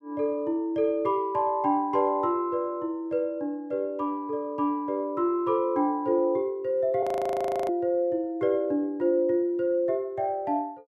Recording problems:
frozen audio; at 7 s for 0.5 s

